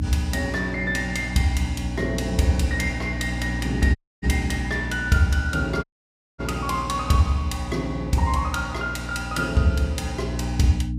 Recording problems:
hum; 60 Hz, harmonics up to 300 Hz, SNR 7 dB
audio cutting out; at 4 s and at 6 s for 0.5 s

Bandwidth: 15.5 kHz